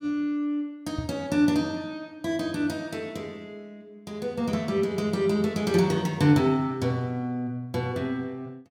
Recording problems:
knock on the microphone; at 1 s; peak -2 dB vs average level

